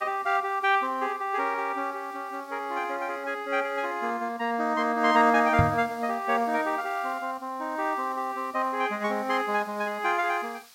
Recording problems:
background hiss; SNR 26 dB
knock on the microphone; at 5.5 s; peak +7 dB vs average level

